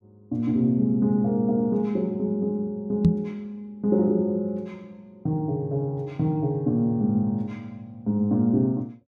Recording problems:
knock on the microphone; at 3 s; peak +9 dB vs average level

